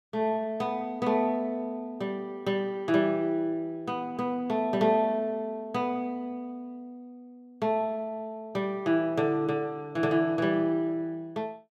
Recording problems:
none

